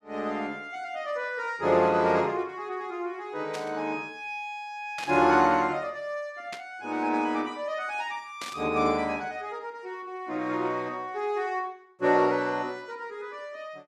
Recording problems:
static burst; 4 times, first at 3.5 s; peak -5 dB vs average level

